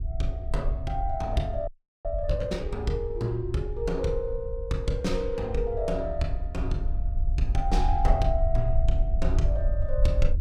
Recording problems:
low-frequency rumble; below 56 Hz, SNR 0 dB
frozen audio; at 1.5 s

